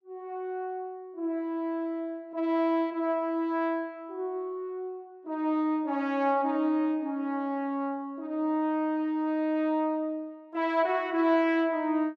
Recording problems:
none

